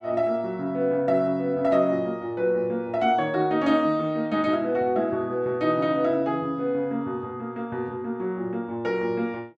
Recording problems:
none

